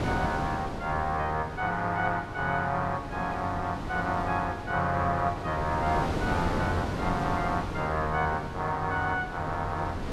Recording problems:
wind noise; below 650 Hz, SNR 6 dB

